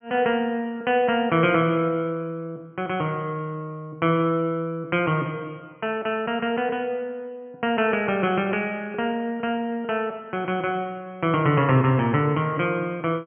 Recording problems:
low-pass filter; nothing above 3.2 kHz

